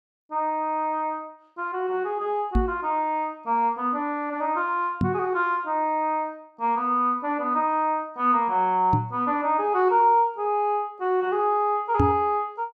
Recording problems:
microphone bump; 4 times, first at 2.5 s; peak +5 dB vs average level

